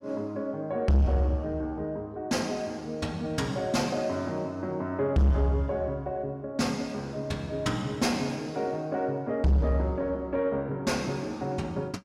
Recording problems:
distortion; soft clipping, signal-to-distortion ratio 8 dB

